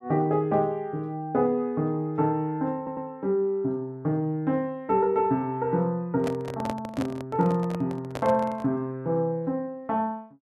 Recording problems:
stutter; at 3 s
handling noise; from 6 to 8.5 s; peak -3 dB vs average level

